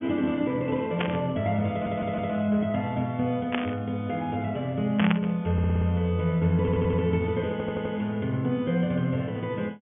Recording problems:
treble cut off; nothing above 3.3 kHz
static burst; at 1 s, at 3.5 s and at 5 s; peak +2 dB vs average level
stutter; 4 times, first at 1.5 s

